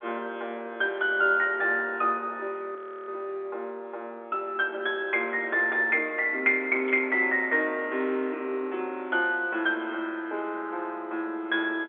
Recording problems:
phone line; 240 Hz to 3.5 kHz, G.711
frozen audio; at 3 s
burst of static; at 7 s; peak -14 dB vs average level

